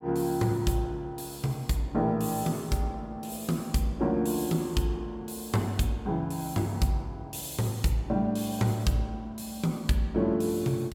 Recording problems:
none

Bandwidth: 17 kHz